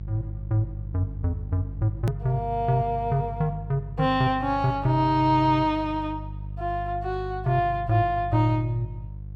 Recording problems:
electrical hum; 50 Hz, harmonics up to 350 Hz, SNR 11 dB
click at an edit; at 2 s

